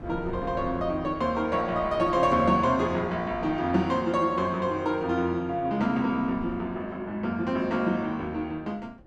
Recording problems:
wind noise; below 340 Hz, SNR 19 dB

